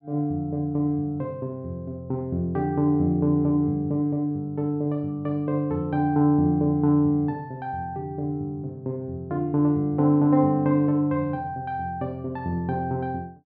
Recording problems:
treble cut off; nothing above 5.5 kHz

